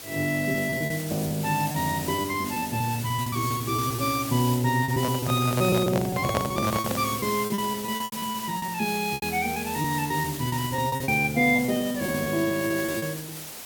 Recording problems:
hiss; slope -1 dB per octave, SNR 9 dB
lost packets; 14% of the sound replaced, filled with repeated pitch periods
microphone handling noise; from 5 to 7 s; peak +4 dB vs average level

